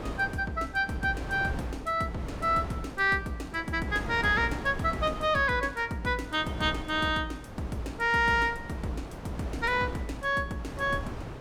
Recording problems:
wind on the microphone; below 670 Hz, SNR 12 dB

